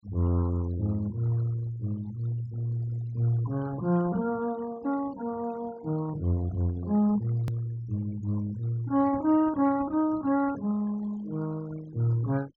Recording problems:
treble cut off; nothing above 8 kHz
denoising artefacts; signal-to-artefact ratio 20 dB
hard cut with a click; at 7.5 s

